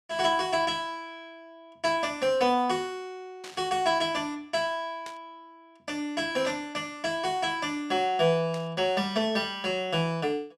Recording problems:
static burst; 4 times, first at 3.5 s; peak -10 dB vs average level

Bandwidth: 12.5 kHz